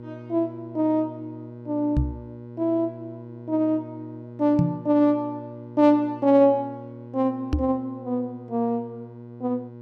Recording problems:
hum; 60 Hz, harmonics up to 1.1 kHz, SNR 16 dB
microphone bump; at 2 s, at 4.5 s and at 7.5 s; peak +5 dB vs average level

